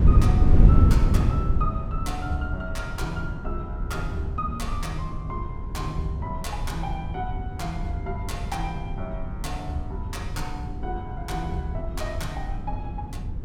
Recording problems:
low-frequency rumble; below 74 Hz, strongest tone 42 Hz, SNR 8 dB
wind on the microphone; below 110 Hz, SNR -6 dB

